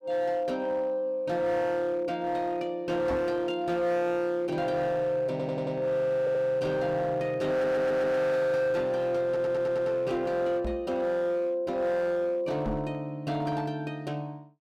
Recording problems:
distortion; hard clipping, signal-to-distortion ratio 11 dB
microphone thump; at 3 s, at 11 s and at 13 s; peak -1 dB vs average level
stutter; 4 times, first at 5.5 s

